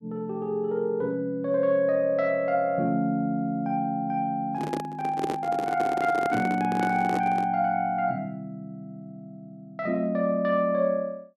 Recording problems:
handling noise; from 4.5 to 7.5 s; peak +1 dB vs average level

